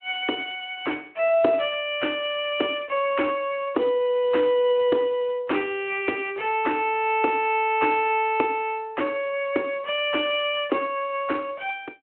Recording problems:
telephone audio; 240 Hz to 3.1 kHz, Speex

